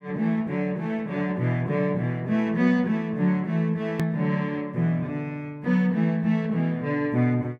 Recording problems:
edit click; at 4 s

